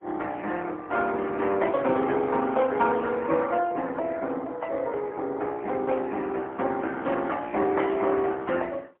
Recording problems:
telephone audio; 240 Hz to 3.4 kHz, AMR-NB, then MP3

